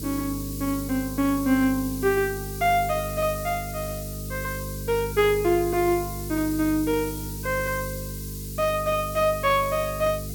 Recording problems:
hum; 50 Hz, harmonics up to 450 Hz, SNR 10 dB
background hiss; SNR 12 dB

